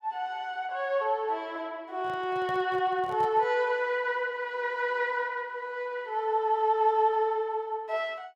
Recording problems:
handling noise; from 2 to 3.5 s; peak -10 dB vs average level

